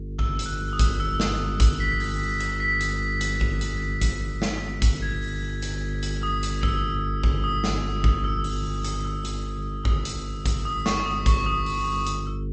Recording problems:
low-pass filter; nothing above 8 kHz
codec artefacts; Opus, log-spectral distance 3 dB
electrical hum; 50 Hz, harmonics up to 450 Hz, SNR 4 dB

